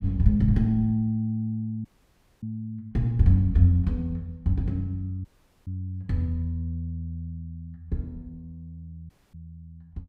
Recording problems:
dropout; at 2 s for 0.5 s, at 5.5 s and at 9 s

